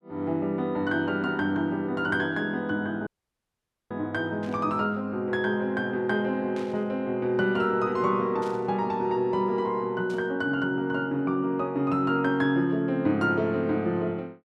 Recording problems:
dropout; at 3 s for 1 s
static burst; 4 times, first at 4.5 s; peak -15 dB vs average level

